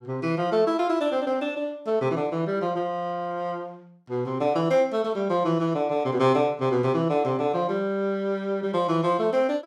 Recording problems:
none

